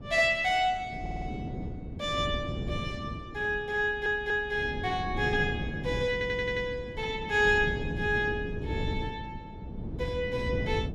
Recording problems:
wind noise; below 260 Hz, SNR 8 dB
audio stuttering; at 1 s, at 4 s and at 6 s

